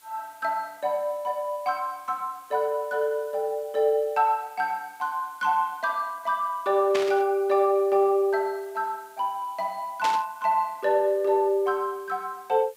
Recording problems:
background hiss; slope +1 dB per octave, SNR 28 dB
burst of static; at 7 s and at 10 s; peak -1 dB vs average level

